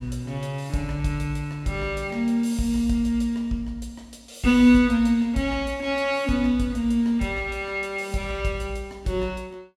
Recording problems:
none

